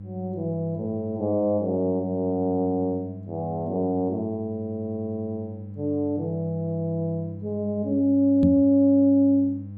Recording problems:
hum; 50 Hz, harmonics up to 500 Hz, SNR 14 dB
microphone thump; at 8.5 s; peak +5 dB vs average level

